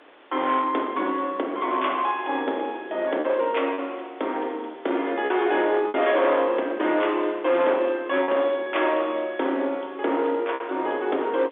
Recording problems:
phone line; 240 Hz to 3.6 kHz, G.711
distorted audio; hard clipping, signal-to-distortion ratio 12 dB
background hiss; SNR 25 dB
lost packets; 3% of the sound replaced, filled with repeated pitch periods

